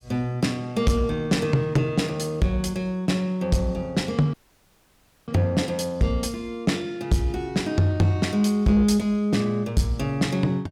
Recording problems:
distorted audio; soft clipping, signal-to-distortion ratio 10 dB
dropout; at 4.5 s for 1 s

